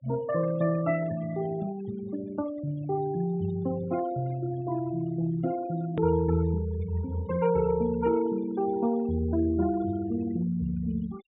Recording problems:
treble missing; nothing above 4 kHz
denoising artefacts; signal-to-artefact ratio 17 dB
hard cut with a click; at 6 s

